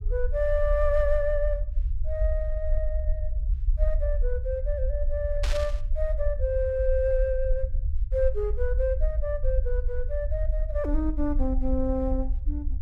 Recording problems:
rumble; below 56 Hz, SNR 0 dB
static burst; at 5.5 s; peak -1 dB vs average level

